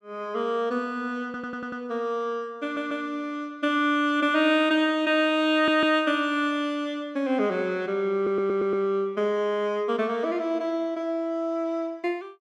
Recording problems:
audio stuttering; 4 times, first at 1.5 s

